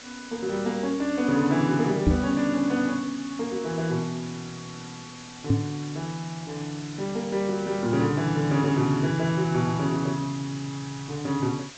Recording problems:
treble missing; nothing above 8 kHz
hiss; slope 0 dB per octave, SNR 15 dB
knock on the microphone; at 2 s and at 5.5 s; peak +8 dB vs average level

